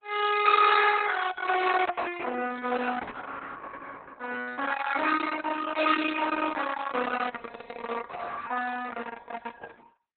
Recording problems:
lossy codec; Opus, log-spectral distance 6 dB, nothing above 4 kHz

